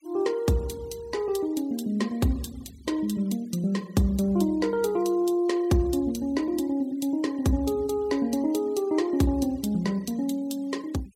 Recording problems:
noise reduction artefacts; signal-to-artefact ratio 24 dB

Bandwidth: 16 kHz